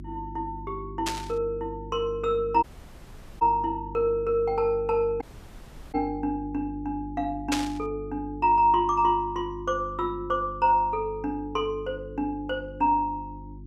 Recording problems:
electrical hum; 50 Hz, harmonics up to 350 Hz, SNR 15 dB
static burst; at 1 s and at 7.5 s; peak +3 dB vs average level
audio cutting out; at 2.5 s for 1 s and at 5 s for 0.5 s

